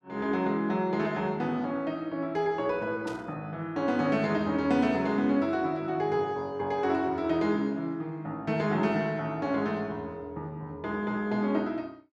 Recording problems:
static burst; at 3 s; peak -11 dB vs average level

